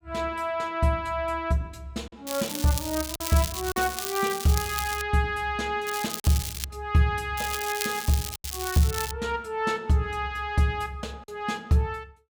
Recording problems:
packet loss; 2% of the sound replaced, filled with silence
crackle; from 2.5 to 5 s, at 6 s and from 7.5 to 9 s; loose cable, SNR 6 dB

